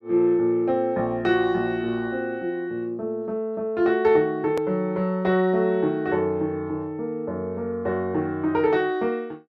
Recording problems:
click at an edit; at 4.5 s

